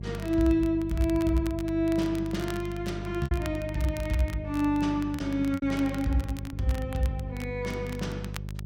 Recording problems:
hum; 50 Hz, harmonics up to 400 Hz, SNR 9 dB
crackle; vinyl, SNR 19 dB
packet loss; 3% of the sound replaced, filled with repeated pitch periods

